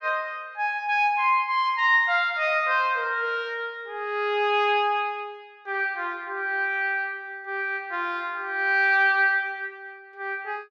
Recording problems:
none

